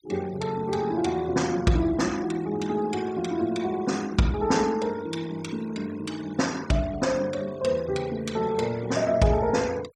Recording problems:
denoising artefacts; signal-to-artefact ratio 19 dB

